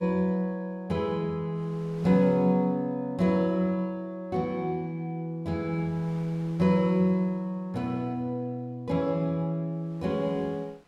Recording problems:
wind on the microphone; below 2.1 kHz, SNR 26 dB

